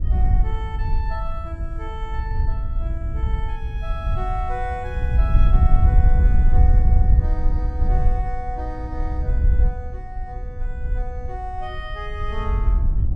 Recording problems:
wind on the microphone; below 68 Hz, SNR -11 dB

